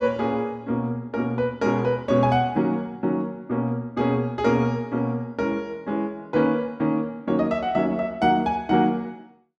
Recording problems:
none

